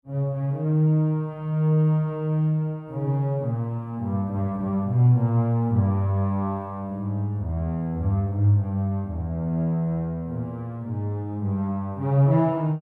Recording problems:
none

